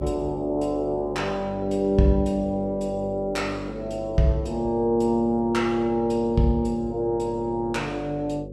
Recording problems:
hum; 50 Hz, harmonics up to 550 Hz, SNR 13 dB

